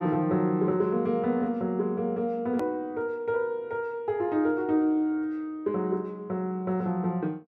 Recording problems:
edit click; at 2.5 s

